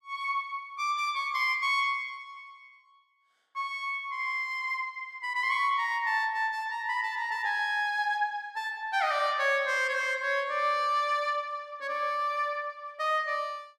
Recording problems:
none

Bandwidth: 15 kHz